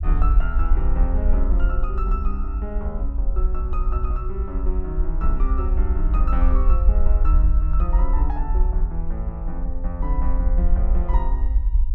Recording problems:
rumble; below 52 Hz, SNR -9 dB

